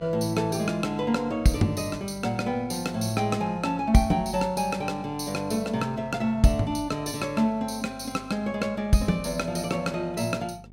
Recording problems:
electrical hum; 50 Hz, harmonics up to 650 Hz, SNR 22 dB

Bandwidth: 16 kHz